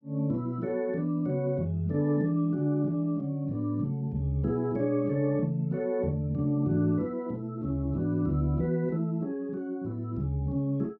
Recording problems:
none

